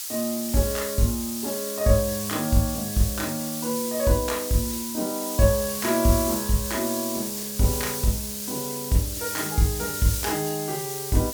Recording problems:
background hiss; slope +5 dB per octave, SNR 4 dB

